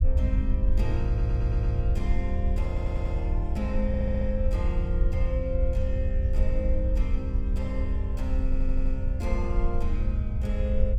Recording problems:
low-frequency rumble; below 68 Hz, SNR -5 dB
stutter; 4 times, first at 1 s

